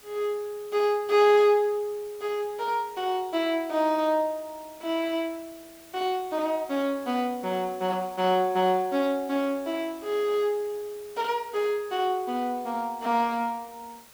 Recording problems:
background hiss; slope -2 dB per octave, SNR 23 dB

